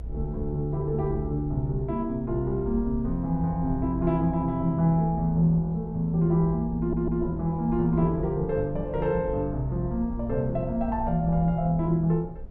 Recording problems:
low-frequency rumble; below 58 Hz, strongest tone 54 Hz, SNR 12 dB
stutter; at 7 s

